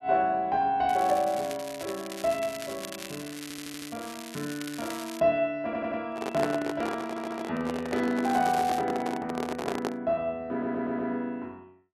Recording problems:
crackling; from 1 to 5 s and at 8.5 s; loose cable, SNR 12 dB
audio stuttering; 4 times, first at 3.5 s
handling noise; from 6 to 10 s; peak +3 dB vs average level

